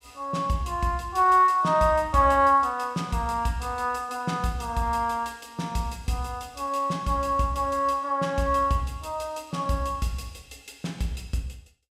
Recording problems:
none

